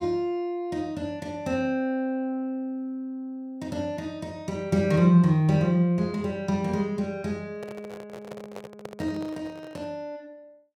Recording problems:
microphone handling noise; from 7.5 to 10 s; peak -8 dB vs average level

